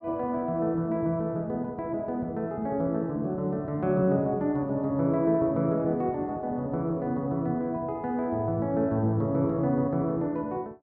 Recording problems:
none

